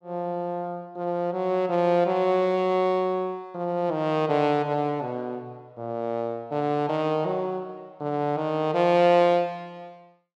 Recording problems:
none

